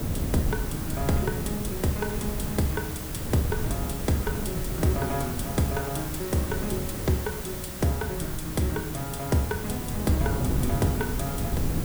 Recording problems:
background hiss; slope -3 dB per octave, SNR 6 dB
wind noise; below 210 Hz, SNR 3 dB

